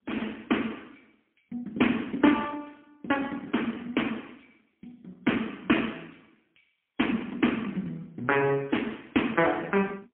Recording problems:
phone line; 170 Hz to 3.3 kHz, AMR-NB, then MP3

